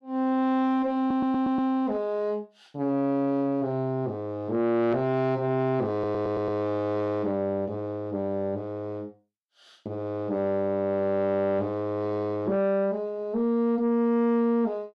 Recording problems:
distortion; soft clipping, signal-to-distortion ratio 12 dB
audio stuttering; at 1 s and at 6 s

